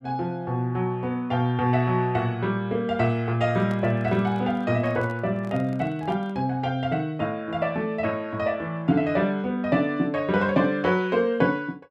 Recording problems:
handling noise; from 3.5 to 6.5 s; peak -11 dB vs average level

